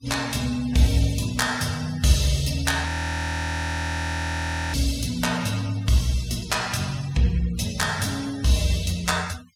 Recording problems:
noise reduction artefacts; signal-to-artefact ratio 18 dB
audio freezing; at 3 s for 2 s

